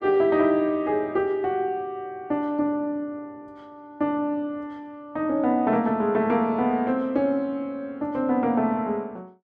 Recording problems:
none

